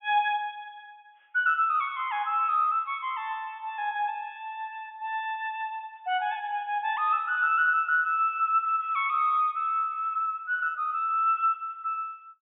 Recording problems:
low-pass filter; nothing above 3.5 kHz

